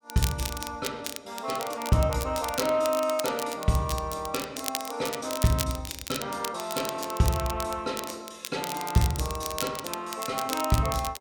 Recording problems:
crackle; vinyl, SNR 7 dB

